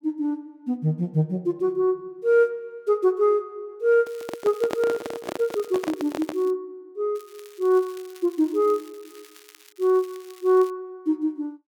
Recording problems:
handling noise; from 4 to 6.5 s; peak -1 dB vs average level
crackle; from 4 to 6.5 s and from 7 to 11 s; loose cable, SNR 25 dB

